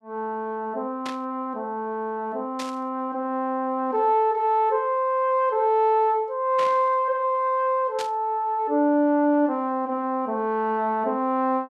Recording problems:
burst of static; 4 times, first at 1 s; peak -6 dB vs average level

